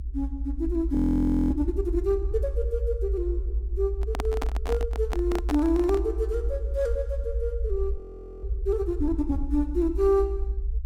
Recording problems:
rumble; below 60 Hz, strongest tone 58 Hz, SNR 3 dB
frozen audio; at 1 s for 0.5 s and at 8 s
microphone handling noise; from 4 to 6 s; peak -1 dB vs average level

